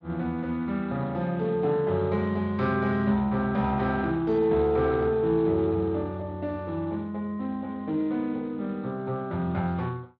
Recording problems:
codec artefacts; Speex, log-spectral distance 2 dB

